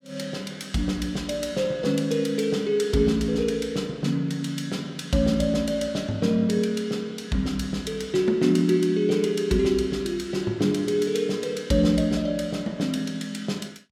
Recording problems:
none

